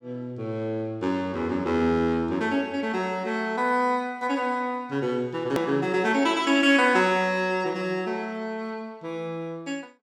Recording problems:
hard cut with a click; at 5.5 s

